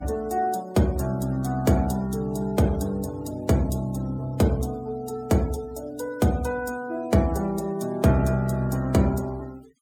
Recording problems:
noise reduction artefacts; signal-to-artefact ratio 22 dB

